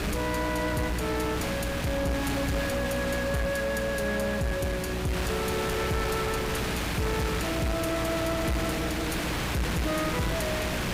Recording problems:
distorted audio; soft clipping, signal-to-distortion ratio 10 dB
electrical hum; 60 Hz, harmonics up to 300 Hz, SNR 6 dB
background hiss; SNR 2 dB
wind noise; below 410 Hz, SNR 16 dB

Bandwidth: 15.5 kHz